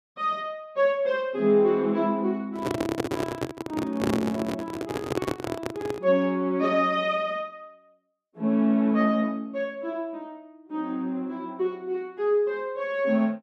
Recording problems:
handling noise; from 2.5 to 6 s; peak +3 dB vs average level

